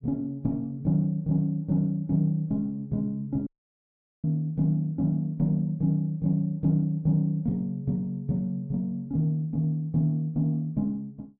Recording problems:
audio cutting out; at 3.5 s for 1 s

